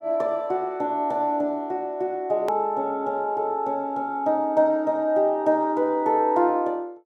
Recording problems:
hard cut with a click; at 2.5 s

